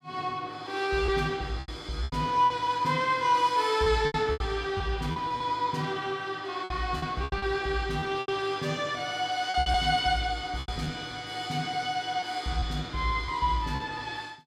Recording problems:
lost packets; 8% of the sound replaced, filled with repeated pitch periods

